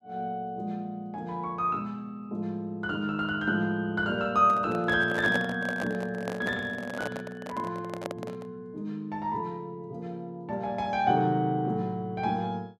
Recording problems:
handling noise; from 4.5 to 8.5 s; peak +1 dB vs average level

